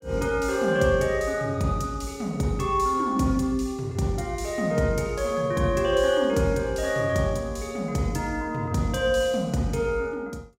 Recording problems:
none

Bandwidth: 16.5 kHz